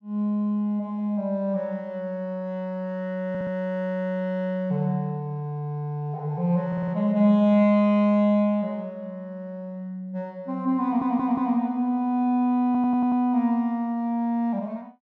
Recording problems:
audio stuttering; 4 times, first at 3.5 s

